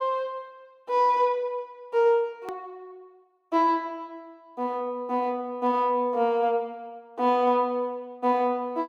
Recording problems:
click at an edit; at 2.5 s

